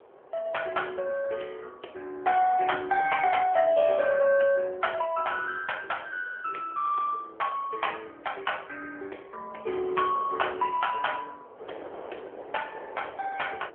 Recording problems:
phone line; 320 Hz to 3.3 kHz, AMR-NB
wind on the microphone; below 780 Hz, SNR 21 dB

